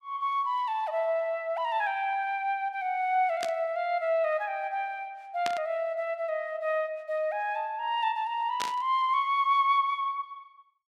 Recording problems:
static burst; at 3.5 s, at 5.5 s and at 8.5 s; peak -1 dB vs average level

